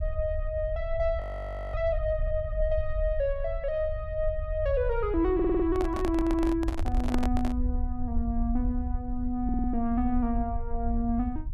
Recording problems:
low-frequency rumble; below 64 Hz, SNR 4 dB
frozen audio; at 1 s for 0.5 s
stutter; at 5.5 s, at 6 s and at 9.5 s
handling noise; from 5.5 to 7.5 s; peak +2 dB vs average level

